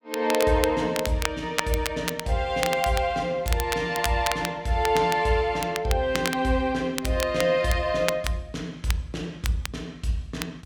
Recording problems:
crackle; vinyl, SNR 8 dB

